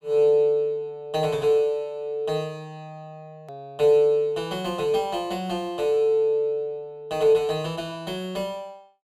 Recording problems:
hard cut with a click; at 3.5 s

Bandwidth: 15 kHz